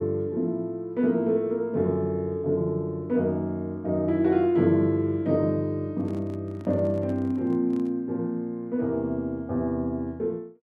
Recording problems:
handling noise; from 6 to 8 s; peak -12 dB vs average level

